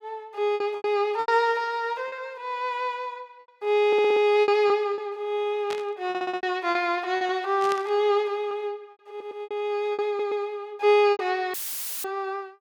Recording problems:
lost packets; 7% of the sound replaced, filled with repeated pitch periods
stutter; 4 times, first at 4 s
burst of static; at 5.5 s and at 7.5 s; peak -6 dB vs average level
audio cutting out; at 12 s for 0.5 s; filled with static

